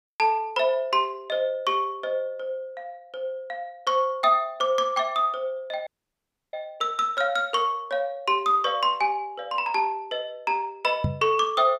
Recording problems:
dropout; at 6 s for 0.5 s
microphone thump; at 11 s; peak +3 dB vs average level

